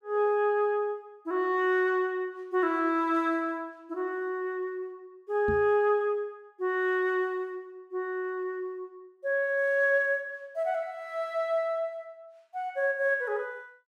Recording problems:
microphone thump; at 5.5 s; peak -2 dB vs average level

